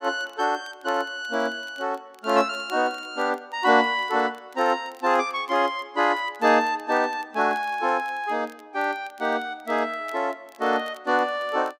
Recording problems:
crackle; vinyl, SNR 30 dB

